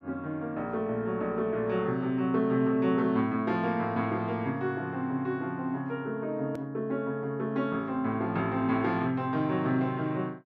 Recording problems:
hard cut with a click; at 6.5 s

